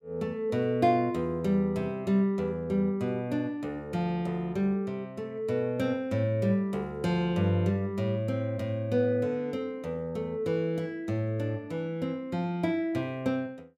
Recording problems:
none

